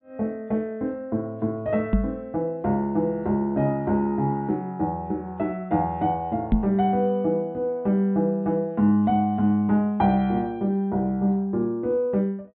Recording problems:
treble missing; nothing above 4 kHz
microphone bump; at 2 s and at 6.5 s; peak +7 dB vs average level

